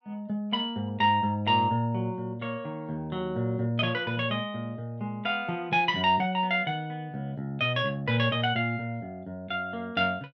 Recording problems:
none

